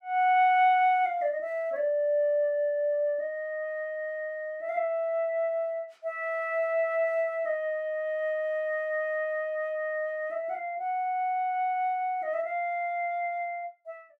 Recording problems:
none

